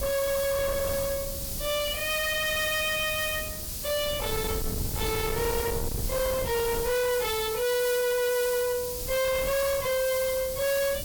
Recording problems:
distorted audio; soft clipping, signal-to-distortion ratio 7 dB
background hiss; SNR 6 dB
wind noise; below 470 Hz, SNR 9 dB

